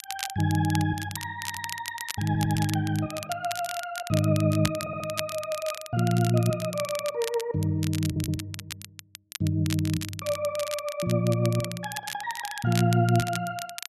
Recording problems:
crackle; vinyl, SNR 10 dB
audio stuttering; 4 times, first at 1.5 s

